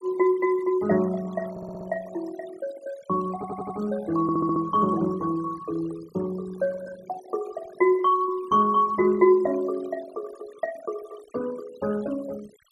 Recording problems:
noise reduction artefacts; signal-to-artefact ratio 20 dB
stutter; at 1.5 s, at 3.5 s and at 4 s

